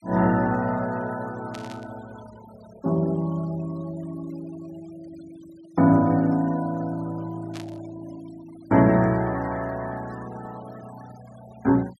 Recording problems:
noise reduction artefacts; signal-to-artefact ratio 23 dB
static burst; at 1.5 s and at 7.5 s; peak -12 dB vs average level

